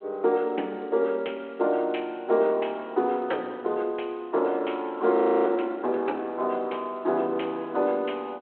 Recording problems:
telephone audio; 320 Hz to 3.4 kHz, G.726
audio freezing; at 5 s

